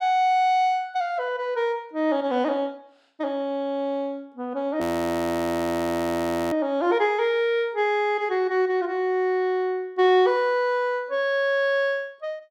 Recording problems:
audio freezing; at 5 s for 1.5 s

